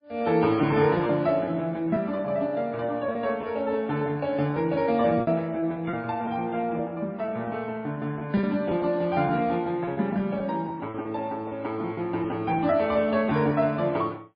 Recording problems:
lossy compression; MP3, log-spectral distance 2 dB, nothing above 4.2 kHz
packet loss; 8% of the sound replaced, filled with repeated pitch periods

